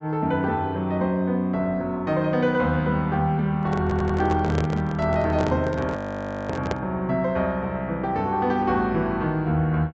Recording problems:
low-pass filter; nothing above 8 kHz
microphone handling noise; from 3.5 to 7 s; peak +1 dB vs average level
audio stuttering; at 4 s
audio freezing; at 6 s for 0.5 s

